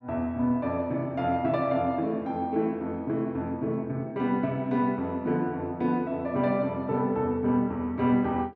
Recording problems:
none

